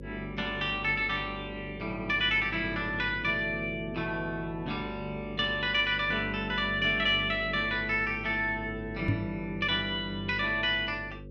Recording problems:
hum; 50 Hz, harmonics up to 550 Hz, SNR 14 dB
microphone thump; at 9 s; peak +4 dB vs average level

